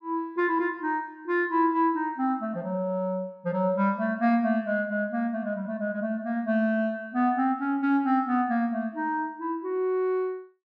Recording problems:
none

